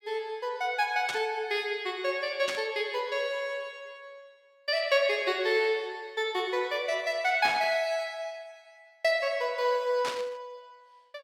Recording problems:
static burst; 4 times, first at 1 s; peak -1 dB vs average level

